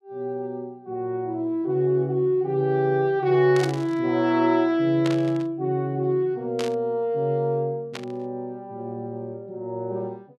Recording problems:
burst of static; 4 times, first at 3.5 s; peak -4 dB vs average level

